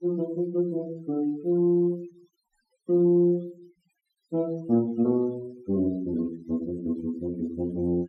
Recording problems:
denoising artefacts; signal-to-artefact ratio 25 dB

